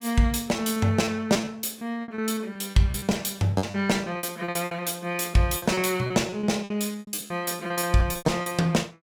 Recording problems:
packet loss; 18% of the sound replaced, filled with repeated pitch periods

